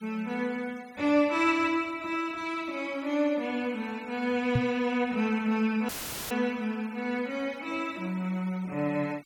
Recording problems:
denoising artefacts; signal-to-artefact ratio 24 dB
microphone thump; at 4.5 s; peak +6 dB vs average level
dropout; at 6 s; filled with static

